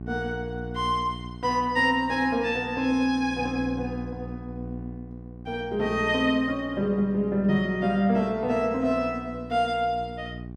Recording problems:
hum; 60 Hz, harmonics up to 780 Hz, SNR 13 dB

